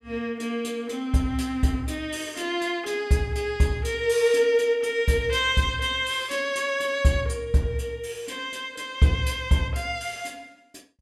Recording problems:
none

